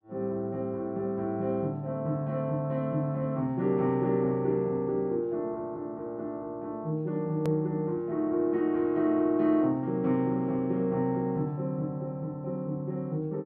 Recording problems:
click at an edit; at 7.5 s

